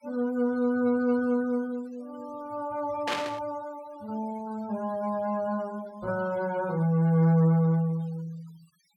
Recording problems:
noise reduction artefacts; signal-to-artefact ratio 24 dB
burst of static; at 3 s; peak +1 dB vs average level

